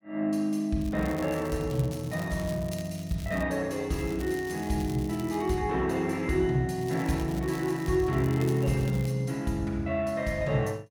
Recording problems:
crackle; from 1 to 3.5 s, from 4 to 5.5 s and from 7 to 9 s; loose cable, SNR 19 dB

